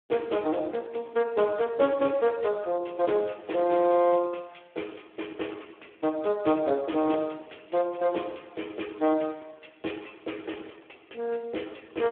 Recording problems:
telephone audio; 240 Hz to 3.5 kHz, Speex

